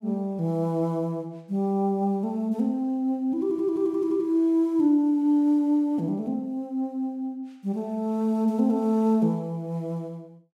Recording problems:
none

